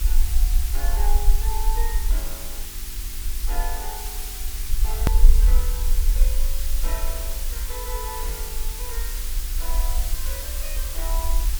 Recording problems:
hum; 50 Hz, harmonics up to 400 Hz, SNR 12 dB
hiss; slope +3 dB per octave, SNR -5 dB
low-frequency rumble; below 44 Hz, strongest tone 20 Hz, SNR -12 dB
click at an edit; at 5 s

